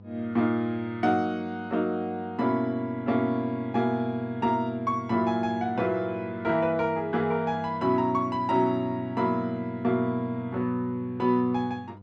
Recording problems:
hum; 50 Hz, harmonics up to 1 kHz, SNR 20 dB

